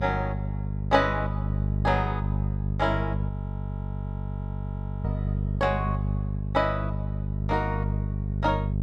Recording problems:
electrical hum; 50 Hz, harmonics up to 450 Hz, SNR 1 dB
audio freezing; at 3.5 s for 2 s

